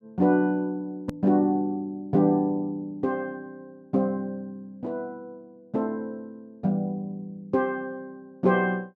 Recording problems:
click at an edit; at 1 s

